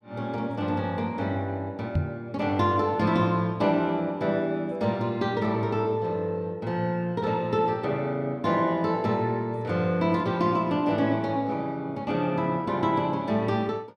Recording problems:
microphone thump; at 2 s; peak +4 dB vs average level

